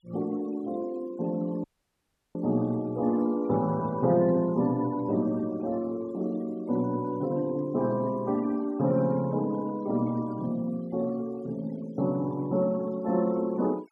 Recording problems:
noise reduction artefacts; signal-to-artefact ratio 24 dB
audio cutting out; at 1.5 s for 0.5 s

